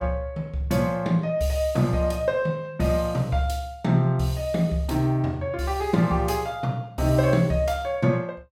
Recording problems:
none

